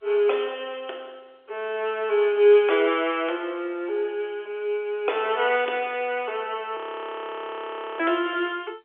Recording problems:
telephone audio; 300 Hz to 3.9 kHz, G.711
frozen audio; at 7 s for 1 s

